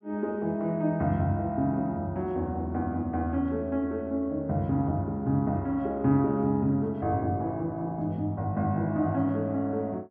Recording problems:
none

